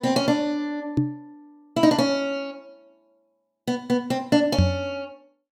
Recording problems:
microphone thump; at 1 s and at 4.5 s; peak +8 dB vs average level

